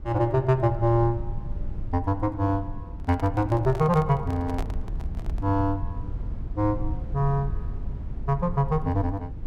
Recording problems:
low-frequency rumble; below 88 Hz, SNR 9 dB
handling noise; from 3 to 5.5 s; peak -6 dB vs average level

